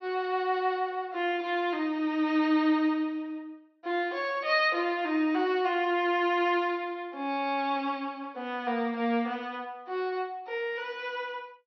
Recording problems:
treble missing; nothing above 5.9 kHz

